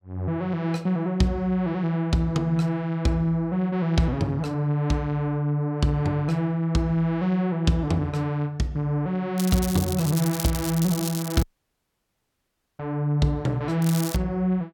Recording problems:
crackling; from 9.5 to 11 s and at 14 s; loose cable, SNR 9 dB
dropout; at 11 s for 1.5 s

